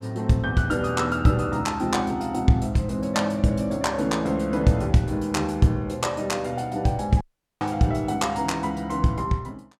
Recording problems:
dropout; at 7 s

